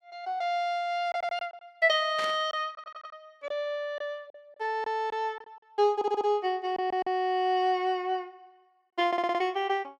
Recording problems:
packet loss; 5% of the sound replaced, filled with silence
audio stuttering; 4 times, first at 1 s
burst of static; at 2 s; peak -5 dB vs average level

